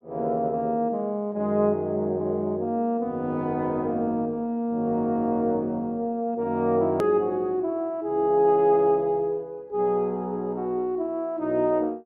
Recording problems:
hard cut with a click; at 7 s

